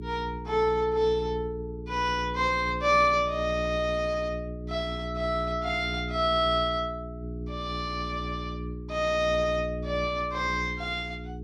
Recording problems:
electrical hum; 60 Hz, harmonics up to 420 Hz, SNR 9 dB

